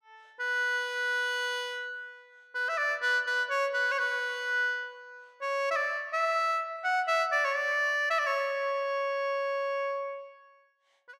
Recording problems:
none

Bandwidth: 14.5 kHz